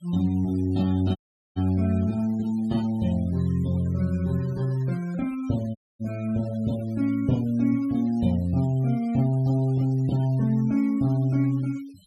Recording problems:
denoising artefacts; signal-to-artefact ratio 25 dB
audio cutting out; at 1 s and at 6 s

